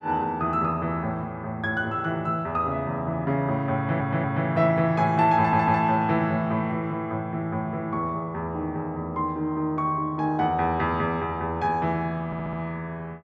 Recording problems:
audio stuttering; at 4 s, at 5.5 s and at 12 s

